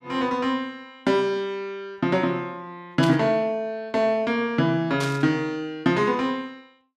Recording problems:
burst of static; at 3 s and at 5 s; peak -3 dB vs average level

